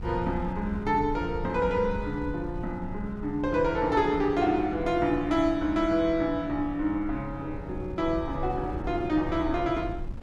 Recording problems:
wind on the microphone; below 110 Hz, SNR 12 dB

